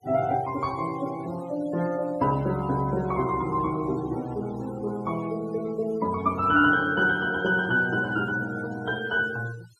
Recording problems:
denoising artefacts; signal-to-artefact ratio 20 dB

